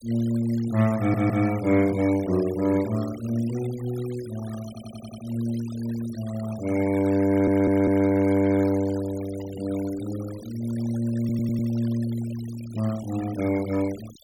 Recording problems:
noise reduction artefacts; signal-to-artefact ratio 18 dB
audio stuttering; 4 times, first at 1 s

